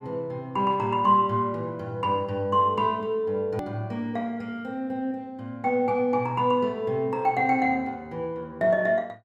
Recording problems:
edit click; at 3.5 s

